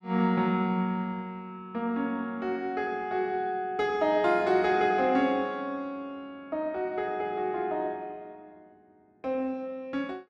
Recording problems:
none

